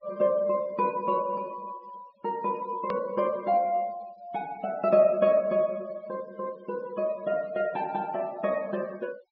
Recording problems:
treble cut off; nothing above 5.5 kHz
noise reduction artefacts; signal-to-artefact ratio 26 dB
click at an edit; at 3 s

